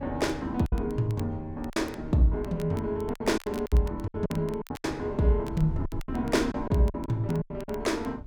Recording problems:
wind on the microphone; below 100 Hz, SNR 15 dB
crackle; vinyl, SNR 23 dB
packet loss; 11% of the sound replaced, filled with silence

